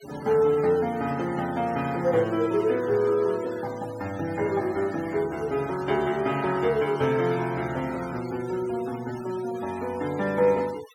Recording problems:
noise reduction artefacts; signal-to-artefact ratio 17 dB

